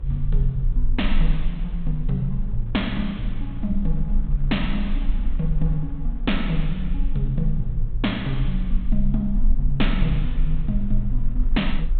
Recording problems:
treble missing; nothing above 4 kHz
hum; 60 Hz, harmonics up to 540 Hz, SNR 20 dB
low-frequency rumble; below 38 Hz, strongest tone 22 Hz, SNR 1 dB
wind on the microphone; below 140 Hz, SNR 20 dB

